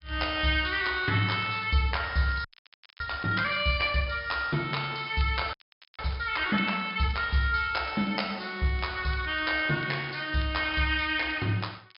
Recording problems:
treble missing; nothing above 5.5 kHz
crackling; vinyl, SNR 26 dB
audio freezing; at 2.5 s for 0.5 s and at 5.5 s

